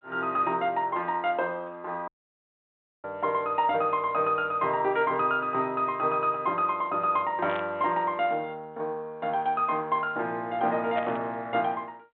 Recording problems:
telephone audio; 190 Hz to 3.8 kHz, G.726
dropout; at 2 s for 1 s
static burst; at 7.5 s and at 11 s; peak -7 dB vs average level

